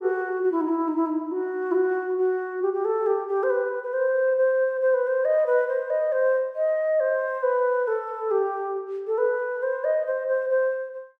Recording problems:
none

